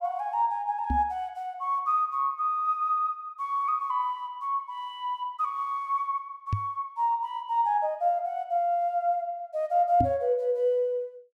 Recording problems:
knock on the microphone; at 1 s, at 6.5 s and at 10 s; peak +3 dB vs average level

